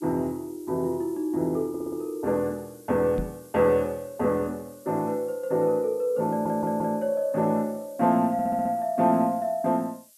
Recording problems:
hiss; SNR 26 dB
stutter; at 1.5 s, at 6.5 s and at 8.5 s
microphone thump; at 3 s; peak -1 dB vs average level

